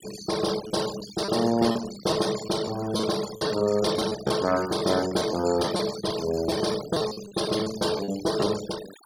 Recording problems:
denoising artefacts; signal-to-artefact ratio 11 dB
packet loss; 12% of the sound replaced, filled with repeated pitch periods

